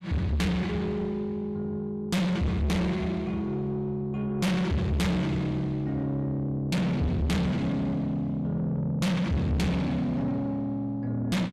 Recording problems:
distortion; soft clipping, signal-to-distortion ratio 6 dB

